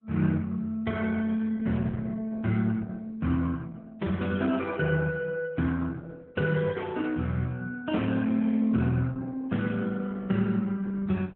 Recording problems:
lossy compression; Opus, log-spectral distance 3 dB

